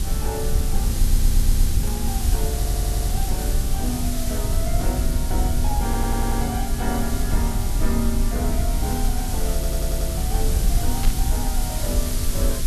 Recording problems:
background hiss; slope +1 dB per octave, SNR 1 dB
rumble; below 68 Hz, SNR -6 dB
stutter; 4 times, first at 1 s
static burst; at 11 s; peak +2 dB vs average level

